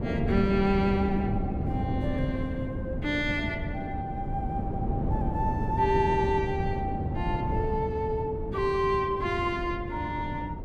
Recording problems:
wind on the microphone; below 250 Hz, SNR 3 dB

